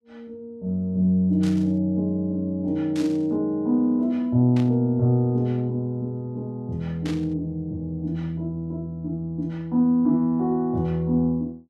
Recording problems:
static burst; 4 times, first at 1.5 s; peak -10 dB vs average level

